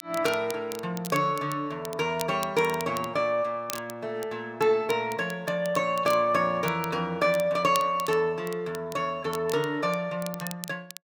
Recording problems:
crackling; vinyl, SNR 15 dB

